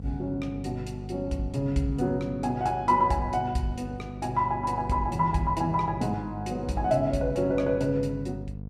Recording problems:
mains hum; 50 Hz, harmonics up to 500 Hz, SNR 11 dB

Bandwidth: 14 kHz